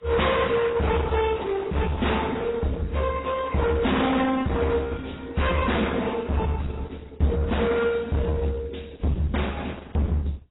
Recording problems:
lossy codec; Opus, then AAC, log-spectral distance 5 dB, nothing above 3.8 kHz
distortion; hard clipping, uneven, signal-to-distortion ratio 5 dB

